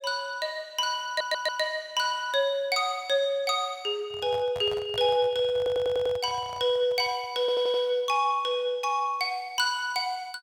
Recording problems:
stutter; at 1 s, at 5.5 s and at 7.5 s
microphone handling noise; from 4 to 8 s; peak -10 dB vs average level

